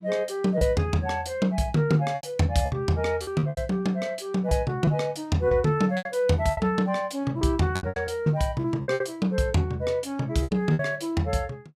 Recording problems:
packet loss; 9% of the sound replaced, filled with repeated pitch periods

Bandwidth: 15 kHz